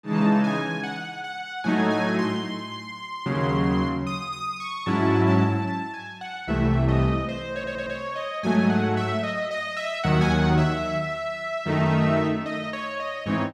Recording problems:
audio stuttering; at 7.5 s

